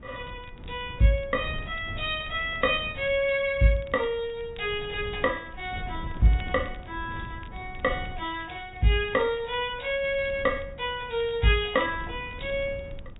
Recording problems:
low-pass filter; nothing above 4 kHz
wind noise; below 140 Hz, SNR 15 dB
crackle; vinyl, SNR 29 dB

